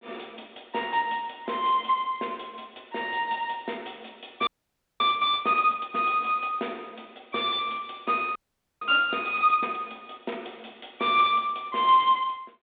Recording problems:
phone line; 260 Hz to 3.7 kHz, G.726
audio freezing; at 4.5 s for 0.5 s and at 8.5 s

